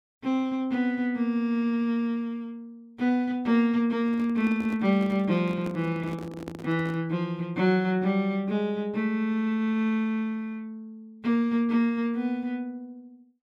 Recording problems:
handling noise; from 4 to 7 s; peak -7 dB vs average level

